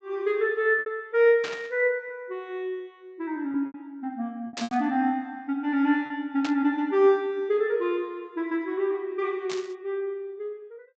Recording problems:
low-pass filter; nothing above 8 kHz
packet loss; 4% of the sound replaced, filled with repeated pitch periods
burst of static; 4 times, first at 1.5 s; peak -3 dB vs average level

